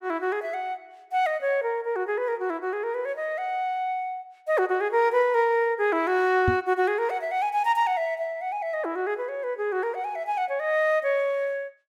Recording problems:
microphone bump; at 6.5 s; peak +3 dB vs average level

